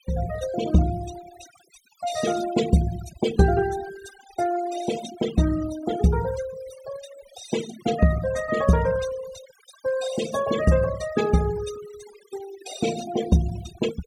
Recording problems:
noise reduction artefacts; signal-to-artefact ratio 14 dB

